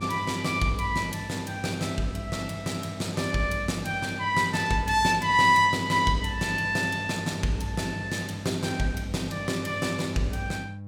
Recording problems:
hum; 50 Hz, harmonics up to 600 Hz, SNR 12 dB

